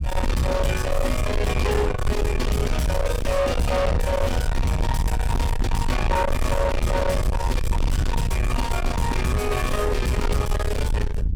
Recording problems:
distorted audio; soft clipping, signal-to-distortion ratio 7 dB
rumble; below 140 Hz, SNR 2 dB

